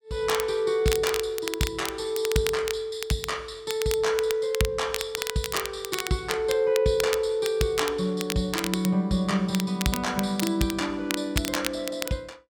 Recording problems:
crackling; vinyl, SNR 7 dB

